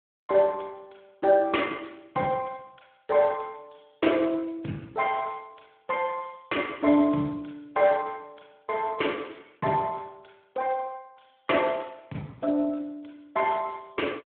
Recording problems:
phone line; 190 Hz to 3.4 kHz, Speex

